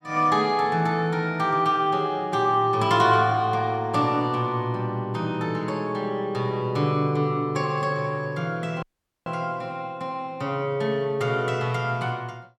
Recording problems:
audio cutting out; at 9 s

